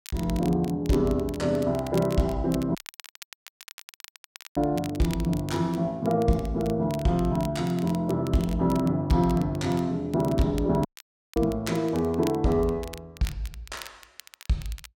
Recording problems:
crackling; vinyl, SNR 19 dB
dropout; at 3 s for 2 s and at 11 s for 0.5 s

